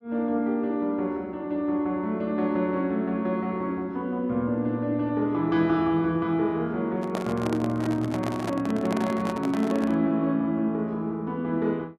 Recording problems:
microphone handling noise; from 7 to 10 s; peak -2 dB vs average level

